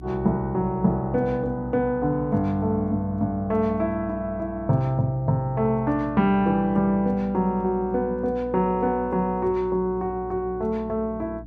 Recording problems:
electrical hum; 60 Hz, harmonics up to 300 Hz, SNR 17 dB

